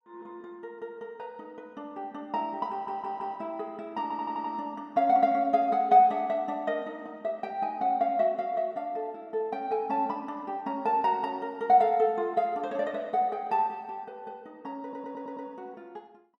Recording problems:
audio stuttering; at 2.5 s, at 4 s and at 15 s

